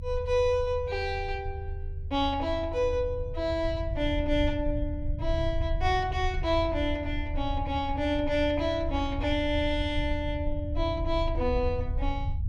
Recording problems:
rumble; below 80 Hz, SNR 5 dB

